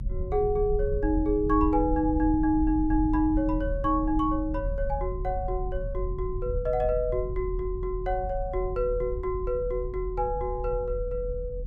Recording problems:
rumble; below 70 Hz, strongest tone 40 Hz, SNR 6 dB

